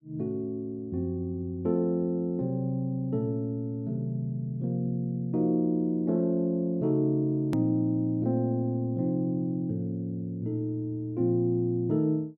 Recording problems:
hard cut with a click; at 7.5 s

